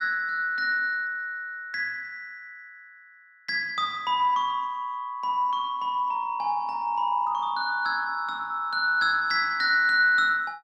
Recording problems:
none

